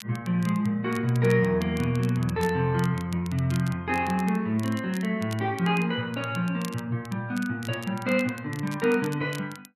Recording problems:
crackle; vinyl, SNR 20 dB

